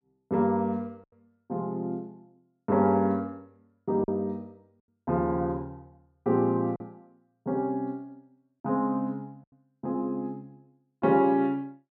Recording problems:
packet loss; 1.1% of the sound replaced, filled with silence

